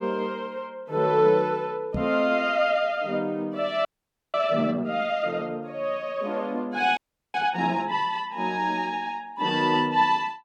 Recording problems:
knock on the microphone; at 2 s; peak -1 dB vs average level
frozen audio; at 4 s and at 7 s

